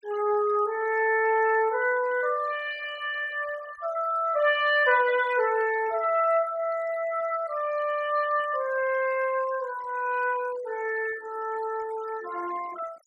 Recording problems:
denoising artefacts; signal-to-artefact ratio 21 dB

